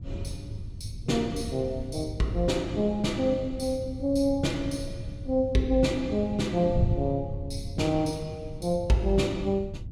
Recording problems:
wind noise; below 120 Hz, SNR 9 dB

